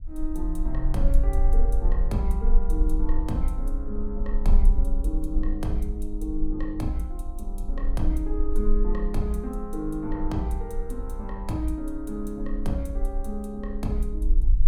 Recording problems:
low-frequency rumble; below 40 Hz, strongest tone 24 Hz, SNR -2 dB

